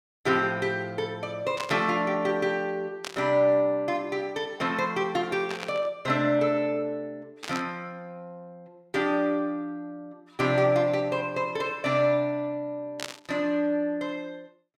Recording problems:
static burst; 5 times, first at 1.5 s; peak -3 dB vs average level

